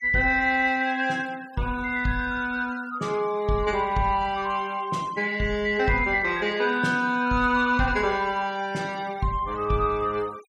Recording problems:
noise reduction artefacts; signal-to-artefact ratio 24 dB

